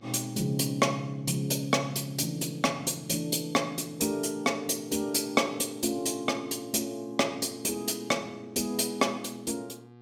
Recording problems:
mains hum; 60 Hz, harmonics up to 2 kHz, SNR 24 dB

